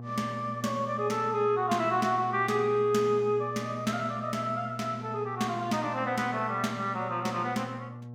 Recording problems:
hum; 60 Hz, harmonics up to 840 Hz, SNR 13 dB

